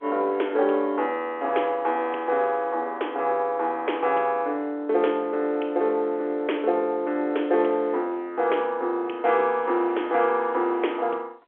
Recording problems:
telephone audio; 300 Hz to 3.5 kHz, G.711

